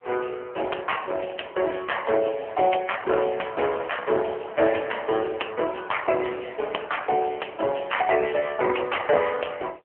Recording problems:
phone line; 340 Hz to 3.2 kHz, AMR-NB

